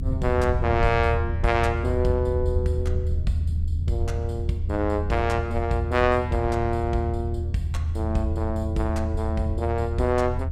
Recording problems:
low-frequency rumble; below 82 Hz, strongest tone 80 Hz, SNR 2 dB

